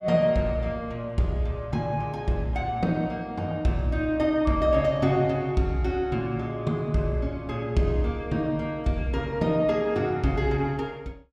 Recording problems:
none

